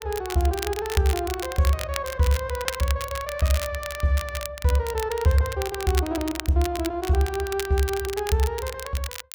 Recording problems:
crackling; vinyl, SNR 10 dB

